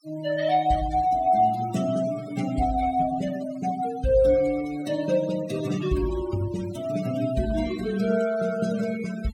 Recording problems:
noise reduction artefacts; signal-to-artefact ratio 16 dB

